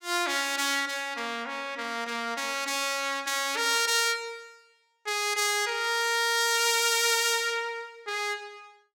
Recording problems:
none

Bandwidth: 17 kHz